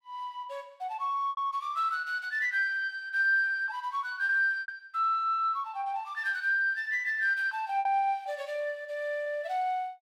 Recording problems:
packet loss; 4% of the sound replaced, filled with repeated pitch periods

